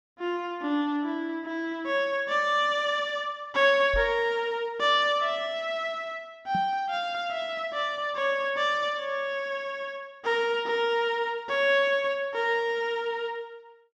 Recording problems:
microphone bump; at 4 s and at 6.5 s; peak -3 dB vs average level

